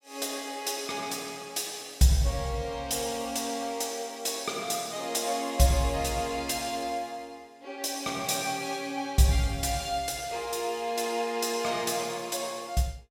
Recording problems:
none

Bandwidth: 16 kHz